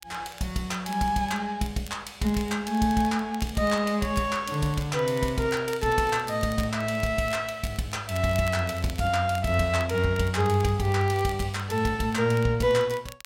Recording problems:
crackling; vinyl, SNR 21 dB

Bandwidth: 16 kHz